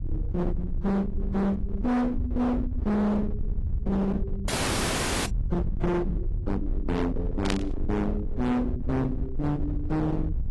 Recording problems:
codec artefacts; AAC, log-spectral distance 2 dB, nothing above 11.3 kHz
distorted audio; hard clipping, uneven, signal-to-distortion ratio 6 dB
rumble; below 100 Hz, SNR 4 dB
audio freezing; at 4.5 s for 1 s
burst of static; at 7.5 s; peak +1 dB vs average level

